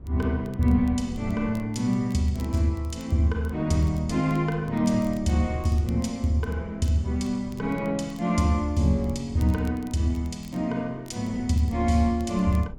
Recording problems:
wind noise; below 130 Hz, SNR 18 dB
crackle; vinyl, SNR 30 dB

